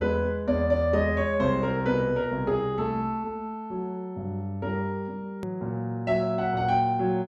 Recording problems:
edit click; at 5.5 s

